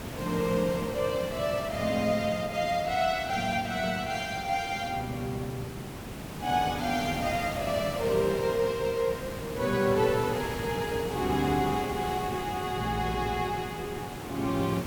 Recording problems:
background hiss; slope -5 dB per octave, SNR 8 dB

